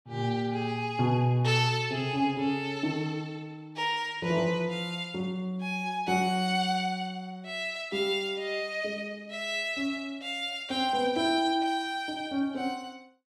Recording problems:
none

